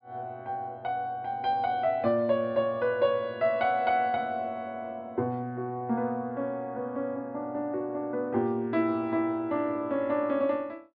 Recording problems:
low-pass filter; nothing above 5.5 kHz

